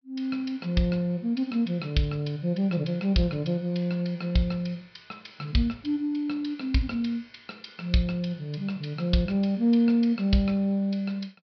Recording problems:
treble cut off; nothing above 5.5 kHz

